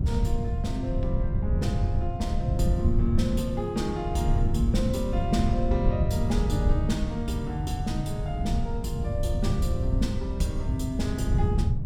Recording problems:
hum; 50 Hz, harmonics up to 300 Hz, SNR 22 dB
wind noise; below 120 Hz, SNR -2 dB

